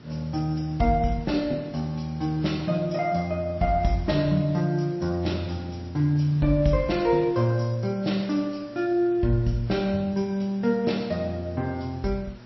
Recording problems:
lossy codec; MP3, log-spectral distance 3 dB, nothing above 5.7 kHz
hum; 60 Hz, harmonics up to 840 Hz, SNR 23 dB
hiss; slope -4 dB per octave, SNR 26 dB

